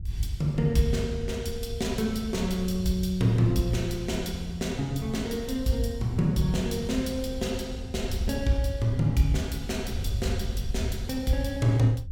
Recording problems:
wind on the microphone; below 90 Hz, SNR 9 dB

